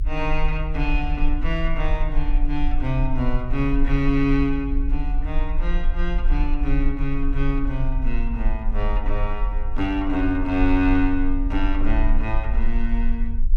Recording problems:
rumble; below 40 Hz, strongest tone 20 Hz, SNR 1 dB

